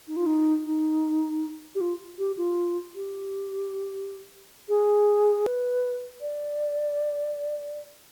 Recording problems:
hiss; slope -1 dB per octave, SNR 25 dB
hard cut with a click; at 5.5 s

